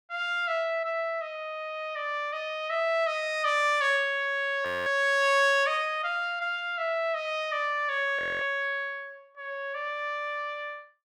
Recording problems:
frozen audio; at 4.5 s and at 8 s

